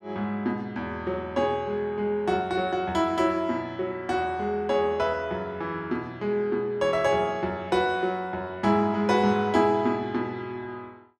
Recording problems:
none

